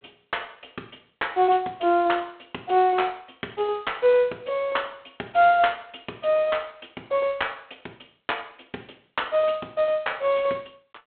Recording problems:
phone line; 260 Hz to 3.6 kHz, G.726

